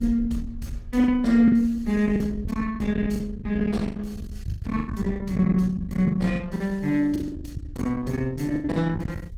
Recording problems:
lossy codec; Opus, log-spectral distance 2 dB
distorted audio; soft clipping, signal-to-distortion ratio 11 dB
rumble; below 230 Hz, SNR 11 dB
packet loss; 9% of the sound replaced, filled with the last packet

